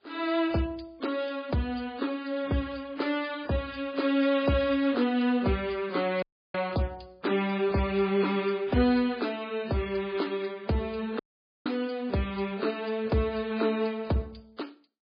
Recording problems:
codec artefacts; MP3, log-spectral distance 4 dB, nothing above 4.6 kHz
audio cutting out; at 6 s and at 11 s

